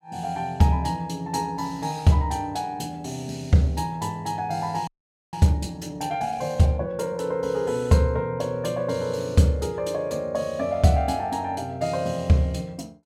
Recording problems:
frozen audio; at 5 s

